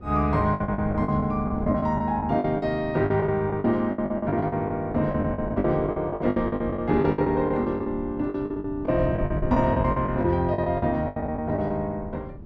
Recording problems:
wind on the microphone; below 200 Hz, SNR 13 dB
lost packets; 17% of the sound replaced, filled with the last packet

